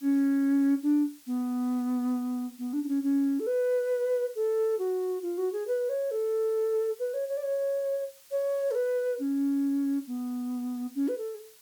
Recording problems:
background hiss; slope +2 dB per octave, SNR 24 dB

